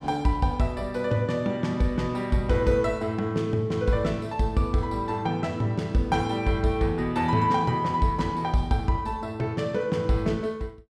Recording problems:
none

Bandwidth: 14.5 kHz